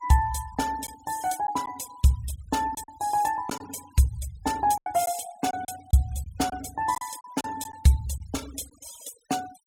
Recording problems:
denoising artefacts; signal-to-artefact ratio 17 dB
lost packets; 5% of the sound replaced, filled with silence

